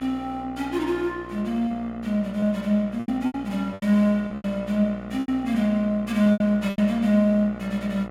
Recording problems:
electrical hum; 60 Hz, harmonics up to 2.6 kHz, SNR 16 dB
packet loss; 8% of the sound replaced, filled with repeated pitch periods

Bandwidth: 16 kHz